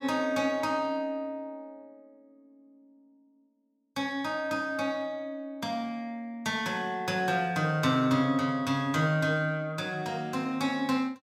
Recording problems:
none

